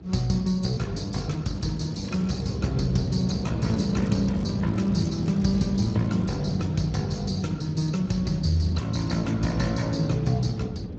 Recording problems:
lossy codec; Speex, log-spectral distance 4 dB, nothing above 16.5 kHz
low-frequency rumble; below 290 Hz, SNR 8 dB
crackle; at 2 s and from 3.5 to 6.5 s; loose cable, SNR 27 dB

